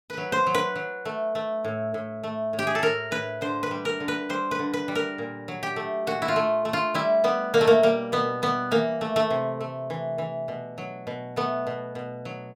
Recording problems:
none

